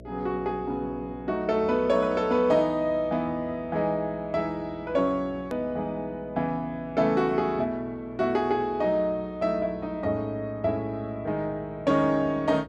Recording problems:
hum; 60 Hz, harmonics up to 660 Hz, SNR 22 dB
edit click; at 5.5 s

